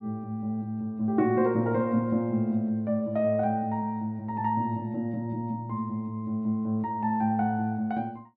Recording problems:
none

